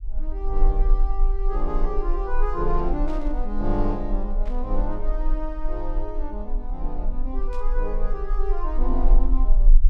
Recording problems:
rumble; below 34 Hz, strongest tone 22 Hz, SNR -4 dB
static burst; at 3 s, at 4.5 s and at 7.5 s; peak -12 dB vs average level

